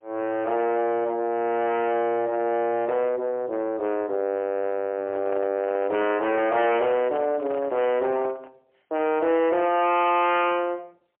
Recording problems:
phone line; 260 Hz to 3.1 kHz, AMR-NB, then MP3
distorted audio; soft clipping, signal-to-distortion ratio 7 dB
microphone handling noise; from 5 to 8.5 s; peak -8 dB vs average level

